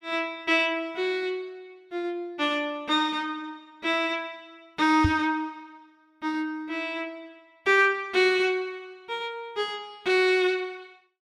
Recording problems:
microphone thump; at 5 s; peak +4 dB vs average level

